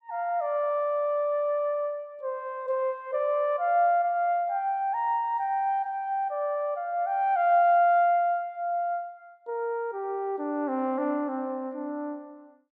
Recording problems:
none

